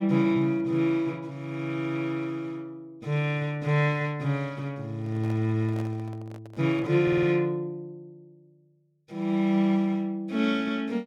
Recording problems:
microphone handling noise; from 5 to 7 s; peak -11 dB vs average level
stutter; at 7 s

